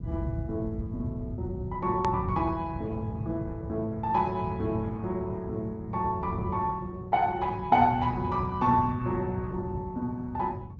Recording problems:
low-pass filter; nothing above 7.3 kHz
lossy codec; Opus, log-spectral distance 2 dB
low-frequency rumble; below 140 Hz, SNR 6 dB
click at an edit; at 2 s

